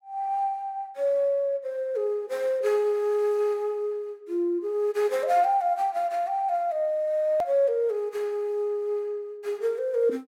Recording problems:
click at an edit; at 7.5 s

